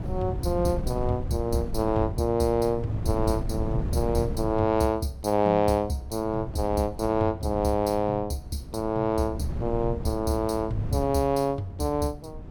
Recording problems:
wind on the microphone; below 150 Hz, SNR 9 dB

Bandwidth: 17 kHz